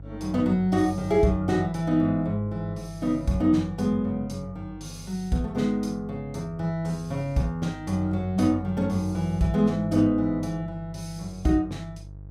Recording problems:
hum; 50 Hz, harmonics up to 500 Hz, SNR 17 dB

